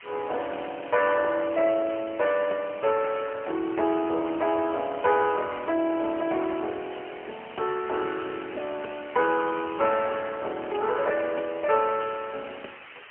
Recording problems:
telephone audio; 280 Hz to 3 kHz, AMR-NB, then MP3
hiss; SNR 18 dB

